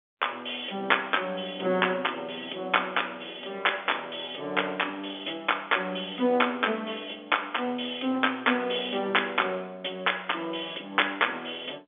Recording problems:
phone line; 220 Hz to 3.5 kHz, G.711

